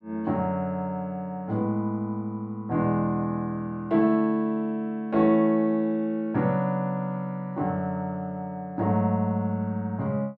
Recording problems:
none

